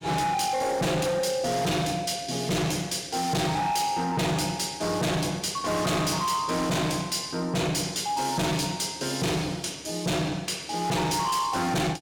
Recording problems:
distorted audio; hard clipping, signal-to-distortion ratio 7 dB

